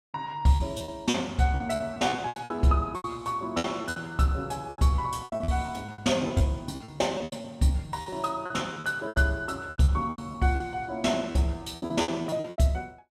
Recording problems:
packet loss; 17% of the sound replaced, filled with repeated pitch periods

